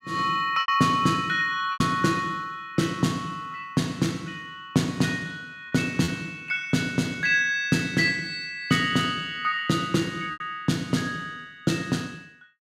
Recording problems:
packet loss; 3% of the sound replaced, filled with repeated pitch periods

